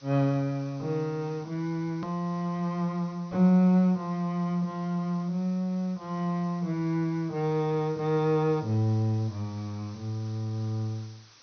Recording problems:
treble missing; nothing above 6.2 kHz
background hiss; SNR 26 dB
click at an edit; at 2 s

